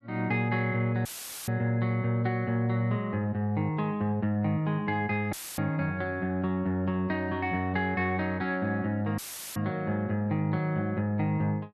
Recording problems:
dropout; at 1 s, at 5.5 s and at 9 s; filled with static

